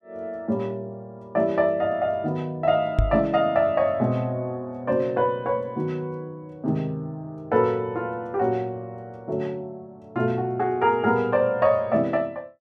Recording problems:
knock on the microphone; at 3 s; peak +6 dB vs average level

